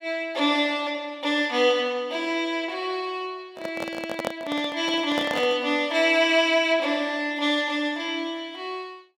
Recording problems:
microphone handling noise; from 3.5 to 5.5 s; peak 0 dB vs average level

